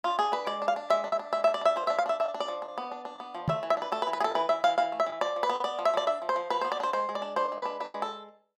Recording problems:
lost packets; 4% of the sound replaced, filled with the last packet
knock on the microphone; at 3.5 s; peak +3 dB vs average level

